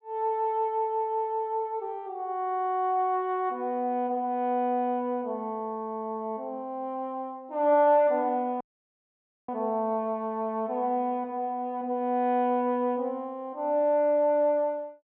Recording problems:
dropout; at 8.5 s for 1 s

